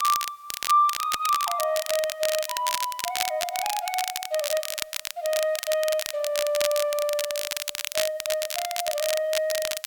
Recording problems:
hiss; slope +2 dB per octave, SNR 29 dB
crackle; vinyl, SNR 4 dB

